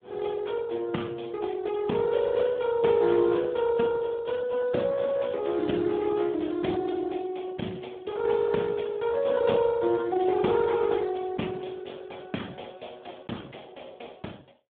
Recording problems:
phone line; 190 Hz to 3.6 kHz, Speex

